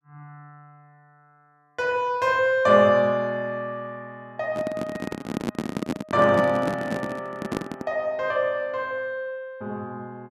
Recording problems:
microphone handling noise; from 4.5 to 8 s; peak +1 dB vs average level

